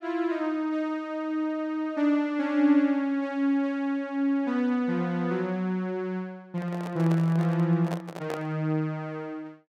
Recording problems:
microphone handling noise; from 6.5 to 8.5 s; peak -5 dB vs average level

